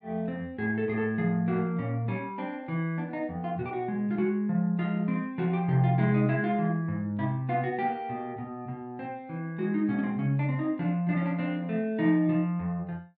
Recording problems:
none

